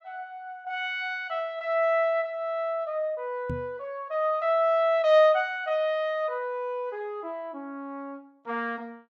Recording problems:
knock on the microphone; at 3.5 s; peak -4 dB vs average level

